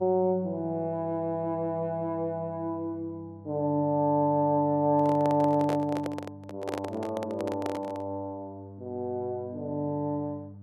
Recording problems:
hum; 50 Hz, harmonics up to 600 Hz, SNR 19 dB
handling noise; from 5 to 8 s; peak -1 dB vs average level

